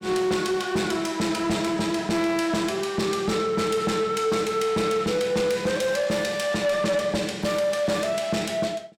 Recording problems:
distorted audio; soft clipping, signal-to-distortion ratio 10 dB

